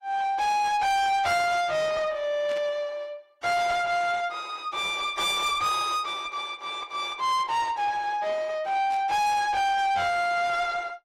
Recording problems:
lossy compression; AAC, log-spectral distance 2 dB, nothing above 15.5 kHz
distorted audio; soft clipping, signal-to-distortion ratio 7 dB
burst of static; at 2.5 s and at 9 s; peak -13 dB vs average level

